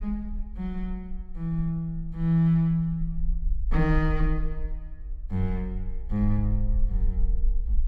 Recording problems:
low-frequency rumble; below 44 Hz, SNR 5 dB

